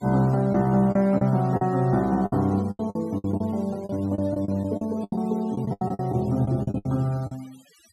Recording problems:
noise reduction artefacts; signal-to-artefact ratio 27 dB
lost packets; 14% of the sound replaced, filled with the last packet

